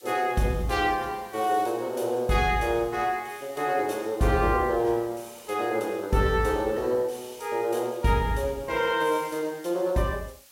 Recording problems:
hiss; slope +2 dB per octave, SNR 25 dB

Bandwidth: 16 kHz